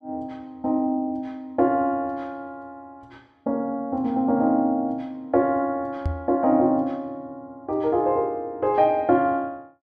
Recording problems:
knock on the microphone; at 6 s; peak +1 dB vs average level

